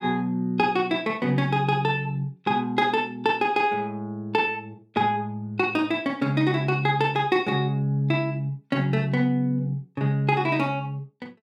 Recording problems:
none

